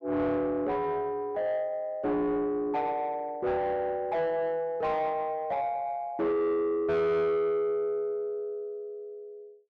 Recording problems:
distortion; soft clipping, signal-to-distortion ratio 8 dB

